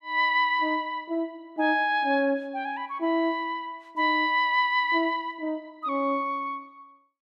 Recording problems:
none

